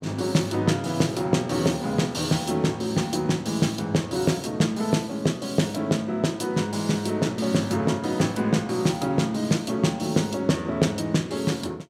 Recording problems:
none

